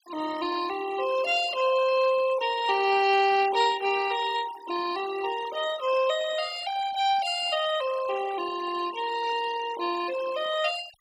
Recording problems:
denoising artefacts; signal-to-artefact ratio 14 dB

